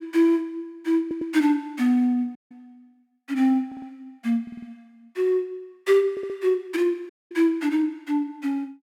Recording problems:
stutter; 4 times, first at 1 s
audio cutting out; at 2.5 s and at 7 s

